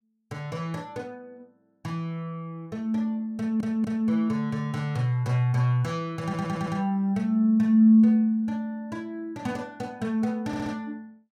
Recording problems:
stutter; at 3.5 s, at 6 s and at 10 s

